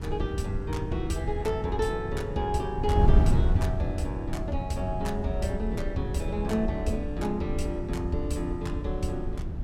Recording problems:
wind on the microphone; below 110 Hz, SNR 0 dB

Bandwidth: 16 kHz